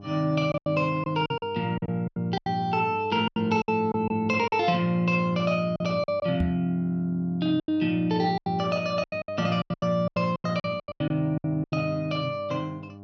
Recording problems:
hum; 50 Hz, harmonics up to 1.1 kHz, SNR 17 dB
packet loss; 13% of the sound replaced, filled with silence
knock on the microphone; at 6.5 s; peak +1 dB vs average level

